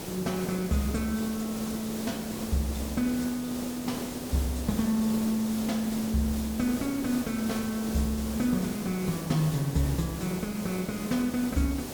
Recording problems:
hiss; SNR 7 dB

